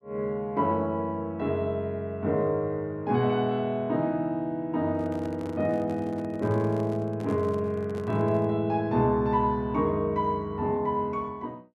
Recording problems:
microphone handling noise; from 5 to 8.5 s; peak -9 dB vs average level

